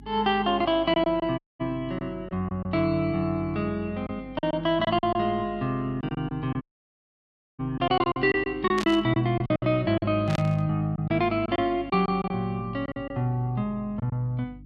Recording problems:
hum; 50 Hz, harmonics up to 300 Hz, SNR 20 dB
packet loss; 8% of the sound replaced, filled with silence
dropout; at 1.5 s and at 6.5 s for 1 s
burst of static; at 9 s and at 10 s; peak -3 dB vs average level

